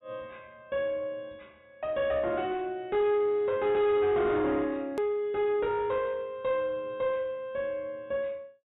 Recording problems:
treble missing; nothing above 4 kHz
distorted audio; soft clipping, signal-to-distortion ratio 10 dB
hard cut with a click; at 5 s

